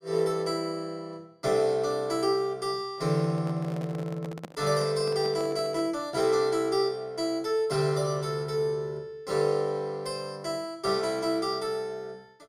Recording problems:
handling noise; from 3 to 6 s; peak -7 dB vs average level

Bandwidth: 15.5 kHz